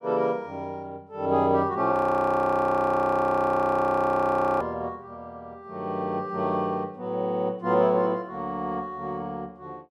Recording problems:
frozen audio; at 2 s for 2.5 s

